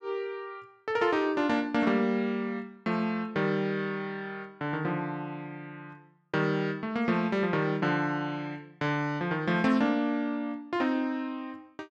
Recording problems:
none

